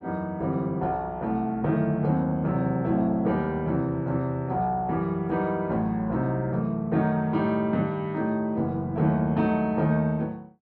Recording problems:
none

